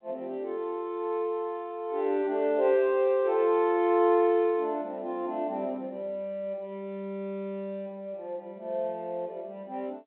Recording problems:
phone line; 220 Hz to 3.9 kHz, G.711

